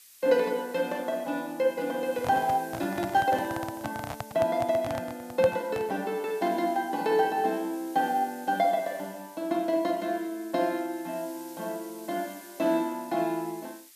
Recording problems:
hiss; slope +4 dB per octave, SNR 20 dB
handling noise; from 2 to 6 s; peak -1 dB vs average level

